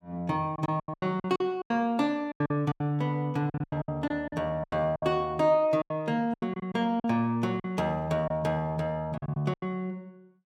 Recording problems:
lost packets; 14% of the sound replaced, filled with silence

